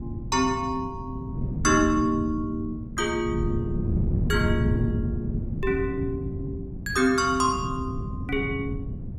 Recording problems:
wind on the microphone; below 180 Hz, SNR 4 dB

